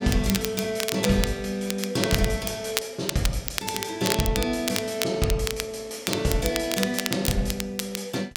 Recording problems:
crackling; vinyl, SNR 4 dB

